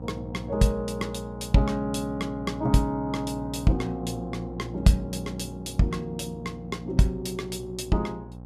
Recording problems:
hum; 60 Hz, harmonics up to 1.1 kHz, SNR 11 dB

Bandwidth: 14.5 kHz